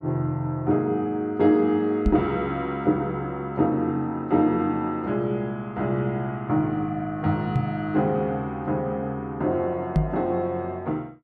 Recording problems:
microphone bump; at 2 s, at 7.5 s and at 10 s; peak +7 dB vs average level

